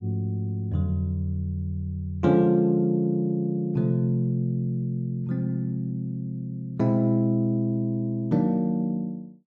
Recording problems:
none

